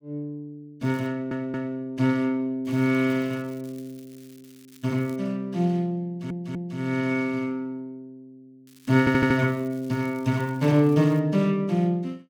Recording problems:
crackling; at 1 s, from 2.5 to 5 s and from 8.5 to 11 s; loose cable, SNR 28 dB
stutter; at 1 s, at 6 s and at 9 s

